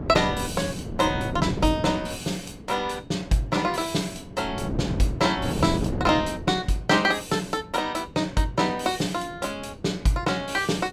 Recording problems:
wind noise; below 350 Hz, SNR 7 dB

